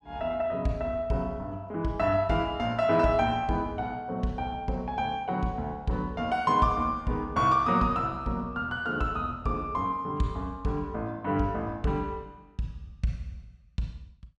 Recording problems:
none

